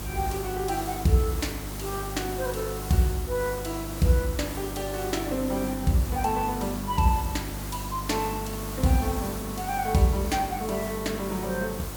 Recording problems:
hum; 50 Hz, harmonics up to 350 Hz, SNR 10 dB
background hiss; slope -4 dB per octave, SNR 10 dB

